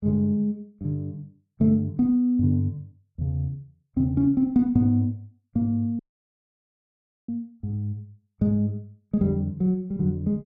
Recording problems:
audio cutting out; at 6 s for 1.5 s

